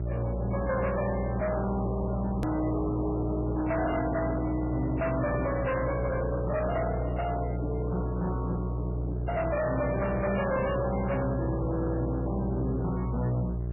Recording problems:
lossy compression; MP3, log-spectral distance 3 dB, nothing above 2.7 kHz
distorted audio; hard clipping, signal-to-distortion ratio 8 dB
electrical hum; 60 Hz, harmonics up to 660 Hz, SNR 2 dB
edit click; at 2.5 s

